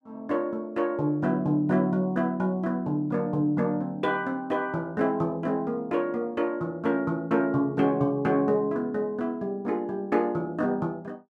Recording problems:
none

